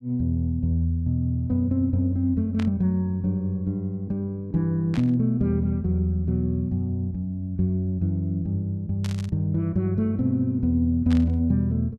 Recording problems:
burst of static; 4 times, first at 2.5 s; peak -9 dB vs average level

